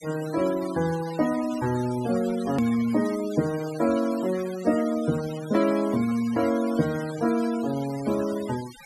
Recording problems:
noise reduction artefacts; signal-to-artefact ratio 16 dB
click at an edit; at 2.5 s

